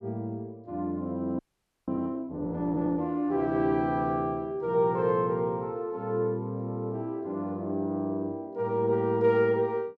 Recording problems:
audio freezing; at 1.5 s

